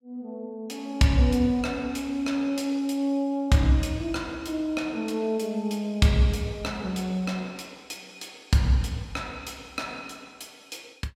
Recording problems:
none

